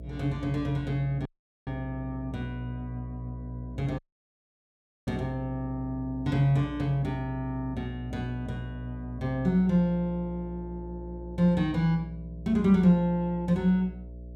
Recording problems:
hum; 60 Hz, harmonics up to 660 Hz, SNR 13 dB
audio cutting out; at 1.5 s and at 4 s for 1 s

